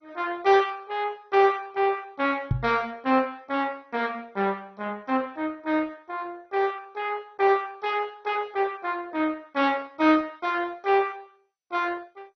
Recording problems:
codec artefacts; MP2, log-spectral distance 4 dB, nothing above 5.5 kHz
microphone bump; at 2.5 s; peak +5 dB vs average level

